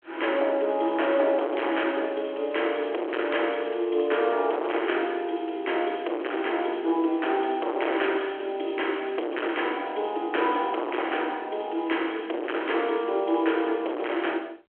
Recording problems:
telephone audio; 280 Hz to 3.3 kHz, G.726
distortion; hard clipping, signal-to-distortion ratio 6 dB

